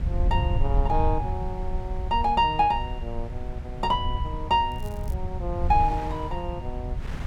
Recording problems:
rumble; below 80 Hz, SNR 5 dB
wind noise; below 950 Hz, SNR 19 dB
crackling; at 4.5 s; loose cable, SNR 27 dB

